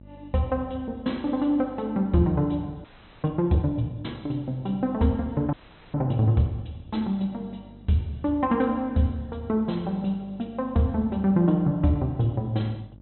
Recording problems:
treble cut off; nothing above 4 kHz
hum; 50 Hz, harmonics up to 650 Hz, SNR 23 dB
audio freezing; at 3 s and at 5.5 s

